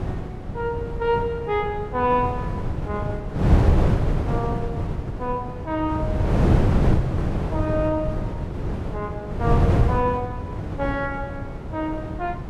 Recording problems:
wind noise; below 230 Hz, SNR -2 dB

